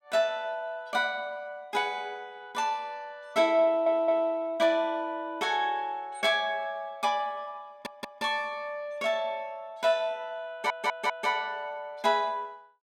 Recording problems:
audio stuttering; at 3.5 s, at 7.5 s and at 11 s

